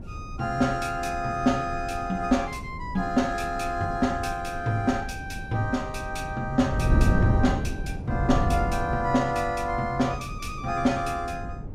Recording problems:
wind noise; below 180 Hz, SNR 5 dB

